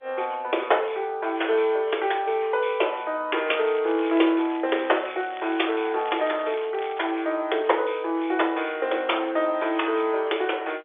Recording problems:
phone line; 280 Hz to 3.5 kHz, G.711
crackle; from 3.5 to 7 s; loose cable, SNR 19 dB

